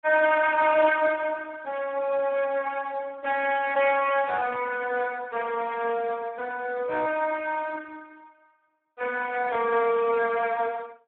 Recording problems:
phone line; 320 Hz to 3.2 kHz, Speex

